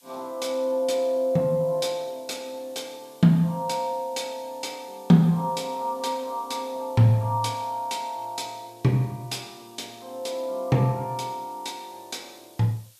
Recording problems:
hiss; slope +2 dB per octave, SNR 27 dB

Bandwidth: 14.5 kHz